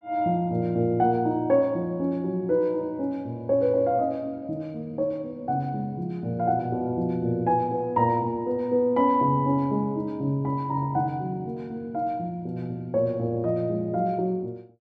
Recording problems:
none

